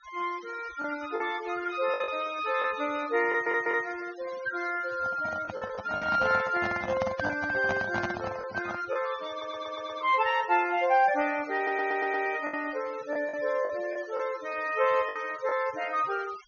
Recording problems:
low-pass filter; nothing above 6.6 kHz
denoising artefacts; signal-to-artefact ratio 18 dB
lost packets; 5% of the sound replaced, filled with the last packet
audio stuttering; at 3.5 s, at 9.5 s and at 12 s
handling noise; from 5 to 9 s; peak 0 dB vs average level

